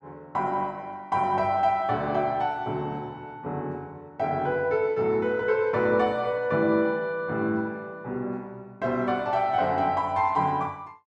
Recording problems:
none

